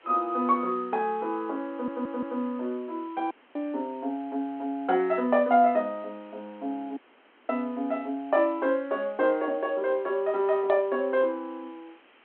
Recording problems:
phone line; 220 Hz to 3.3 kHz, G.726
hiss; SNR 29 dB
stutter; at 1.5 s
audio cutting out; at 3.5 s and at 7 s for 0.5 s

